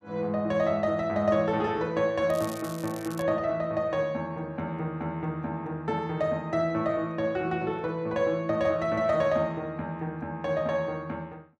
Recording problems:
crackling; at 2.5 s; loose cable, SNR 17 dB

